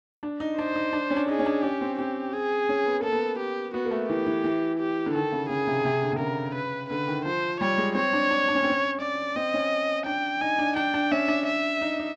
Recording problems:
none

